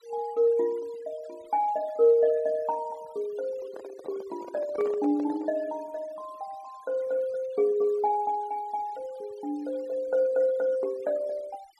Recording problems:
denoising artefacts; signal-to-artefact ratio 26 dB
microphone handling noise; from 3.5 to 5.5 s; peak -7 dB vs average level

